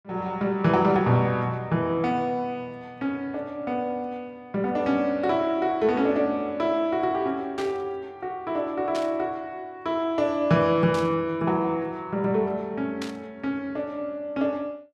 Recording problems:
static burst; 4 times, first at 7.5 s; peak -6 dB vs average level

